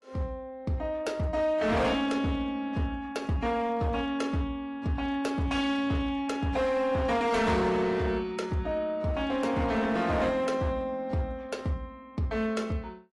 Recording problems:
lossy codec; AAC, log-spectral distance 2 dB, nothing above 11.3 kHz
distorted audio; hard clipping, signal-to-distortion ratio 11 dB

